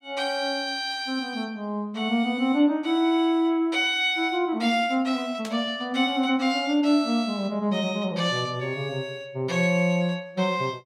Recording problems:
burst of static; at 5.5 s; peak -8 dB vs average level

